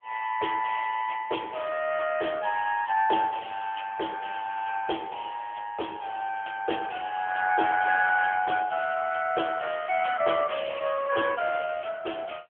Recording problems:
phone line; 240 Hz to 2.9 kHz, AMR-NB

